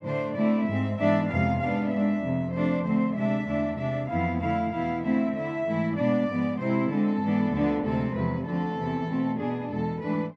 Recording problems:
none

